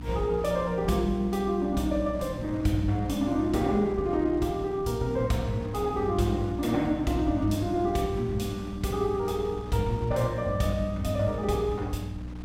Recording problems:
hum; 60 Hz, harmonics up to 300 Hz, SNR 13 dB
wind on the microphone; below 500 Hz, SNR 20 dB

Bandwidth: 16.5 kHz